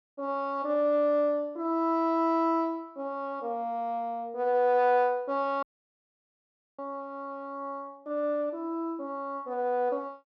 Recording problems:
dropout; at 5.5 s for 1 s

